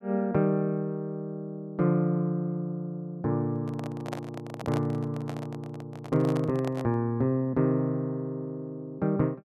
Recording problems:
microphone handling noise; from 3.5 to 7 s; peak -3 dB vs average level

